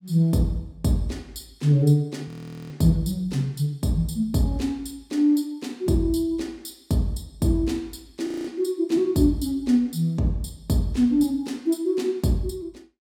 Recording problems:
audio freezing; at 2.5 s and at 8.5 s

